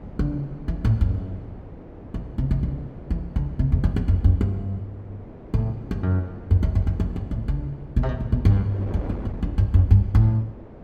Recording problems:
wind noise; below 420 Hz, SNR 17 dB

